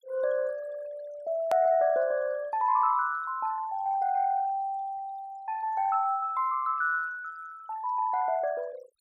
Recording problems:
noise reduction artefacts; signal-to-artefact ratio 23 dB
hard cut with a click; at 1.5 s

